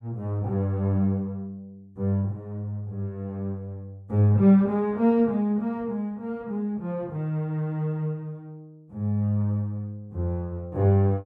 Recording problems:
none

